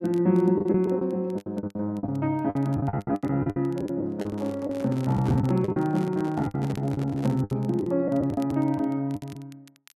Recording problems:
crackle; vinyl, SNR 29 dB
packet loss; 14% of the sound replaced, filled with the last packet
handling noise; from 4 to 7.5 s; peak -5 dB vs average level

